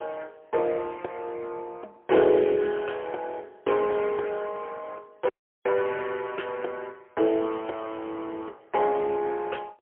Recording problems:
phone line; 300 Hz to 3.2 kHz, AMR-NB, then MP3
audio cutting out; at 5.5 s

